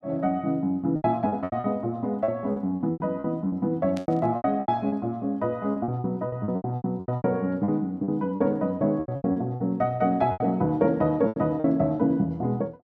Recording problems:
lost packets; 15% of the sound replaced, filled with repeated pitch periods
burst of static; at 4 s; peak -11 dB vs average level

